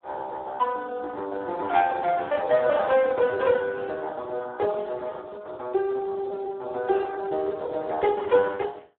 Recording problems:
phone line; 320 Hz to 2.1 kHz, Speex

